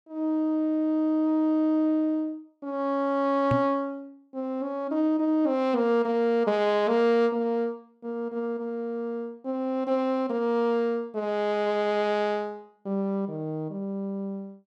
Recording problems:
microphone bump; at 3.5 s; peak +3 dB vs average level

